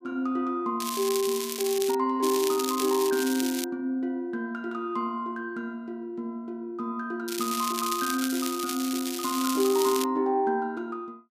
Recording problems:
crackle; from 1 to 2 s, from 2 to 3.5 s and from 7.5 to 10 s; loose cable, SNR 5 dB

